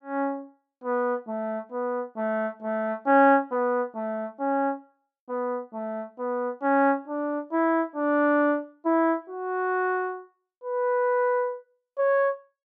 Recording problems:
none

